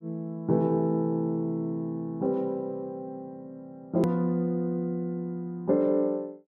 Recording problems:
hard cut with a click; at 4 s

